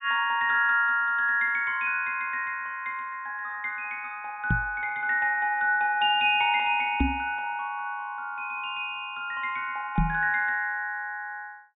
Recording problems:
treble missing; nothing above 4 kHz
microphone bump; at 4.5 s, at 7 s and at 10 s; peak +5 dB vs average level

